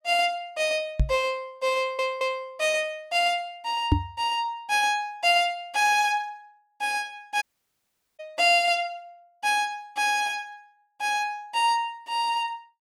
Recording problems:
microphone bump; at 1 s and at 4 s; peak +8 dB vs average level
audio stuttering; at 2 s
audio cutting out; at 7.5 s for 1 s

